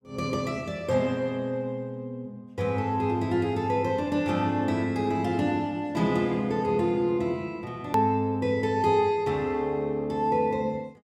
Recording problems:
click at an edit; at 8 s

